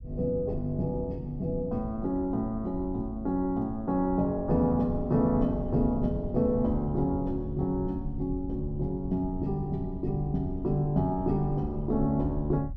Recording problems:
low-frequency rumble; below 84 Hz, SNR 11 dB

